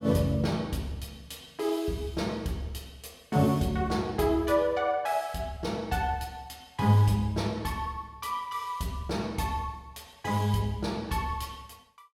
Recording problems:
none

